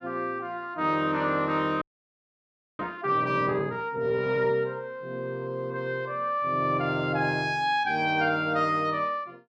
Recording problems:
frozen audio; at 2 s for 1 s

